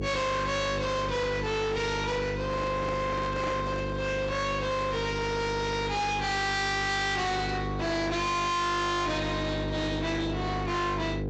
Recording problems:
treble cut off; nothing above 8 kHz
distorted audio; hard clipping, uneven, signal-to-distortion ratio 6 dB
electrical hum; 50 Hz, harmonics up to 1.4 kHz, SNR 5 dB
handling noise; from 2.5 to 4 s; peak -2 dB vs average level

